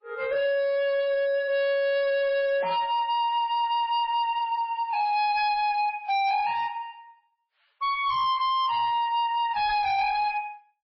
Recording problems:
codec artefacts; MP3, log-spectral distance 2 dB, nothing above 5.5 kHz
distortion; hard clipping, signal-to-distortion ratio 7 dB

